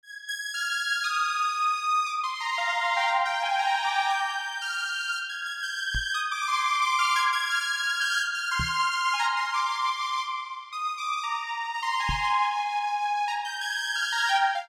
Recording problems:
knock on the microphone; at 6 s, at 8.5 s and at 12 s; peak -2 dB vs average level

